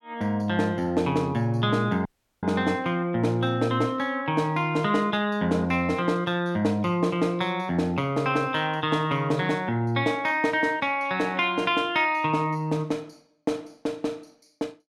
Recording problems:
audio cutting out; at 2 s

